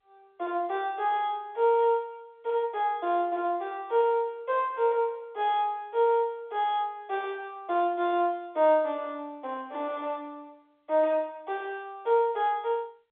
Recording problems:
telephone audio; 320 Hz to 3.6 kHz, G.711

